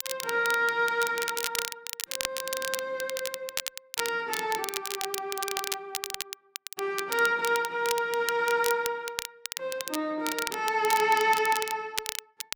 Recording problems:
crackling; vinyl, SNR 6 dB

